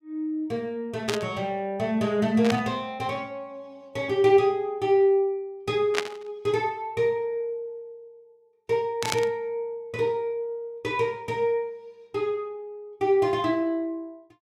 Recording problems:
burst of static; 4 times, first at 1 s; peak +4 dB vs average level

